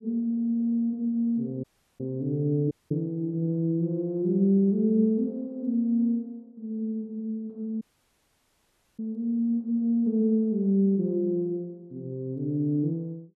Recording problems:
dropout; at 1.5 s, at 2.5 s and at 8 s for 1 s

